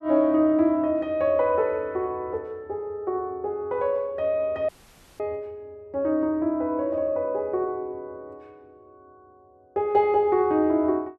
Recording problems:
dropout; at 4.5 s for 0.5 s

